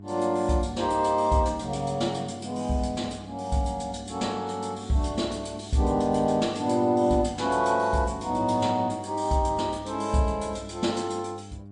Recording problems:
lossy compression; MP3, log-spectral distance 3 dB, nothing above 8.7 kHz
mains hum; 50 Hz, harmonics up to 800 Hz, SNR 17 dB

